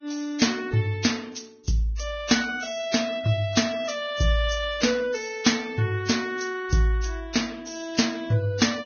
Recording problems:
lossy codec; Vorbis, log-spectral distance 5 dB, nothing above 6.5 kHz

